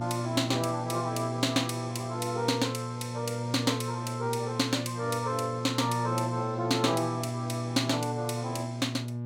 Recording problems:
hum; 60 Hz, harmonics up to 840 Hz, SNR 5 dB

